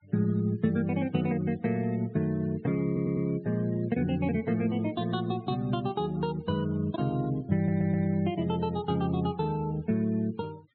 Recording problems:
treble missing; nothing above 4.3 kHz
noise reduction artefacts; signal-to-artefact ratio 24 dB
audio stuttering; at 3 s and at 7.5 s

